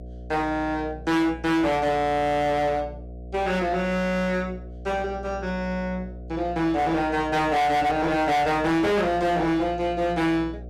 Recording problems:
distorted audio; hard clipping, uneven, signal-to-distortion ratio 6 dB
hum; 60 Hz, harmonics up to 720 Hz, SNR 16 dB

